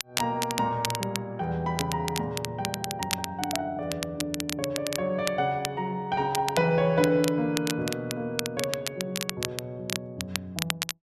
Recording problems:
crackle; vinyl, SNR 5 dB

